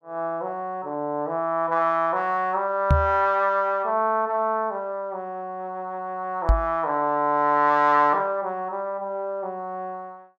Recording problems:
microphone thump; at 3 s and at 6.5 s; peak +8 dB vs average level

